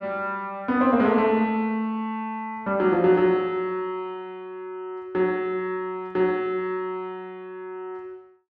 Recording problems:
none

